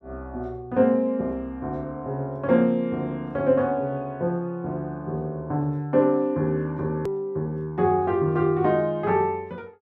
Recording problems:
click at an edit; at 7 s

